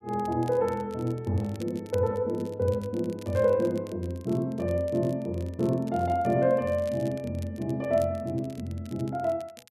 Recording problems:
crackling; vinyl, SNR 25 dB

